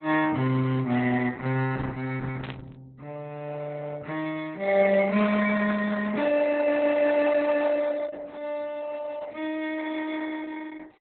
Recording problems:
lossy compression; Opus, log-spectral distance 4 dB, nothing above 3.9 kHz
static burst; at 2.5 s; peak -8 dB vs average level

